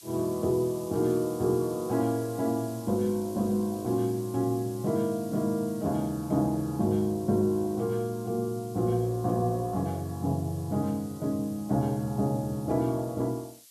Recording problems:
hiss; SNR 20 dB

